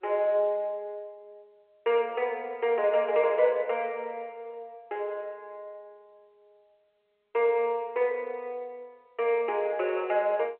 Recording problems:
phone line; 300 Hz to 3.2 kHz, G.711

